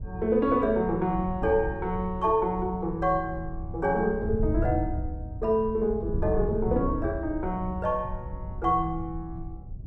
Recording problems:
wind on the microphone; below 110 Hz, SNR 9 dB

